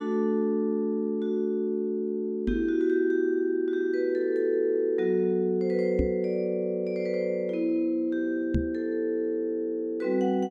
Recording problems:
microphone bump; at 2.5 s, at 6 s and at 8.5 s; peak +4 dB vs average level

